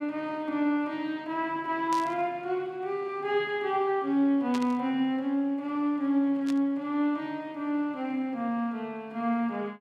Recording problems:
static burst; at 2 s, at 4.5 s and at 6.5 s; peak -6 dB vs average level

